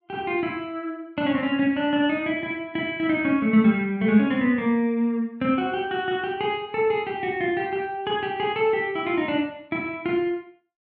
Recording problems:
none

